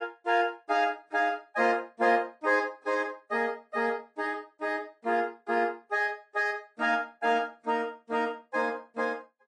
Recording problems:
codec artefacts; AAC, then MP3, log-spectral distance 2 dB, nothing above 10.1 kHz

